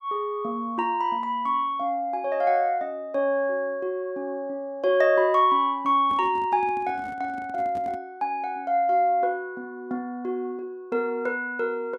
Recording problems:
handling noise; from 6 to 8 s; peak -11 dB vs average level

